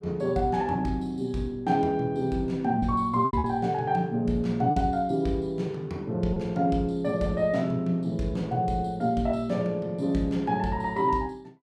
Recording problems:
lost packets; 2% of the sound replaced, filled with repeated pitch periods

